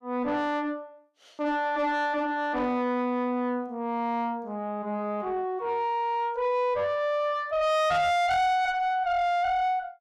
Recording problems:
distorted audio; soft clipping, signal-to-distortion ratio 7 dB

